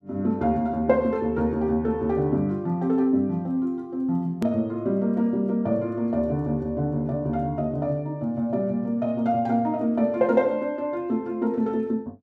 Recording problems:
edit click; at 4.5 s

